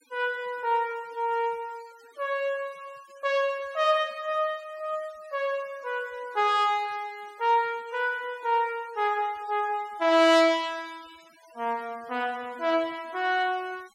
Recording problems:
noise reduction artefacts; signal-to-artefact ratio 26 dB

